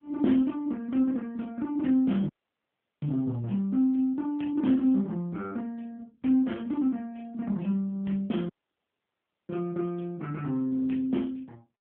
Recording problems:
phone line; 130 Hz to 3.5 kHz, AMR-NB
audio cutting out; at 2.5 s for 0.5 s and at 8.5 s for 1 s

